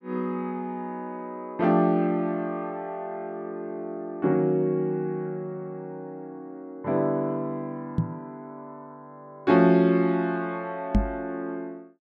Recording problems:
microphone thump; at 8 s and at 11 s; peak +8 dB vs average level

